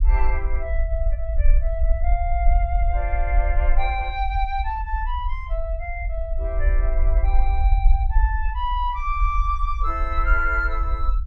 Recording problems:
rumble; below 52 Hz, SNR -3 dB

